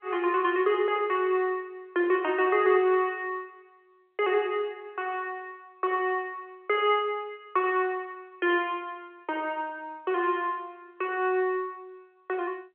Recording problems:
telephone audio; 300 Hz to 3.3 kHz, G.711

